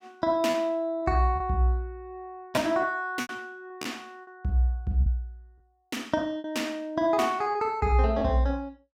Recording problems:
packet loss; 6% of the sound replaced, filled with repeated pitch periods

